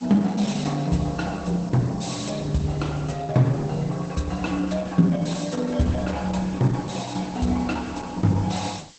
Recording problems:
lossy compression; Opus, log-spectral distance 6 dB, nothing above 8.2 kHz
hiss; slope +2 dB per octave, SNR 24 dB

